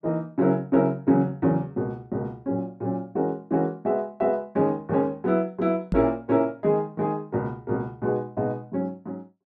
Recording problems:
knock on the microphone; at 6 s; peak +3 dB vs average level

